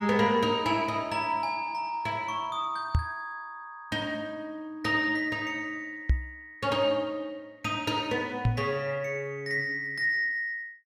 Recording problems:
microphone bump; at 3 s, at 6 s and at 8.5 s; peak +8 dB vs average level

